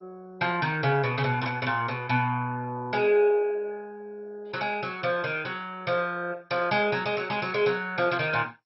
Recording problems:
codec artefacts; MP2, log-spectral distance 4 dB, nothing above 5.5 kHz

